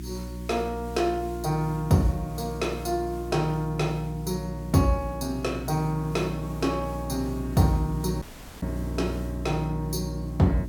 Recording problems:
hum; 60 Hz, harmonics up to 360 Hz, SNR 8 dB
hiss; SNR 24 dB
dropout; at 8 s

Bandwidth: 17 kHz